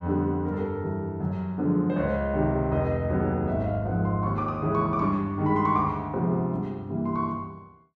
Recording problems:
none

